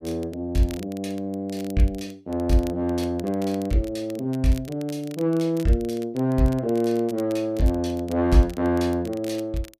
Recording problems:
crackling; vinyl, SNR 22 dB

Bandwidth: 15 kHz